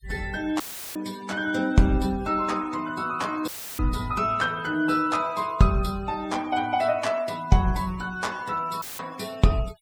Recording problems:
denoising artefacts; signal-to-artefact ratio 21 dB
audio cutting out; at 0.5 s, at 3.5 s and at 9 s; filled with static

